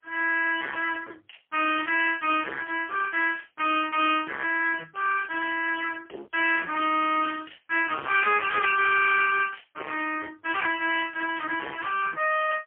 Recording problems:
phone line; 340 Hz to 3.3 kHz, AMR-NB, then MP3
distorted audio; hard clipping, uneven, signal-to-distortion ratio 8 dB

